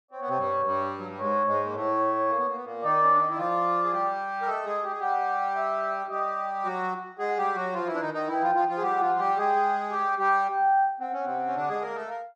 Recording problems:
none

